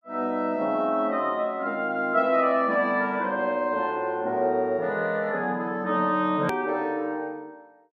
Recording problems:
hard cut with a click; at 6.5 s

